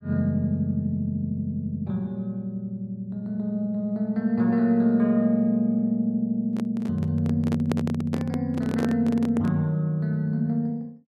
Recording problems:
microphone handling noise; from 6.5 to 9.5 s; peak 0 dB vs average level

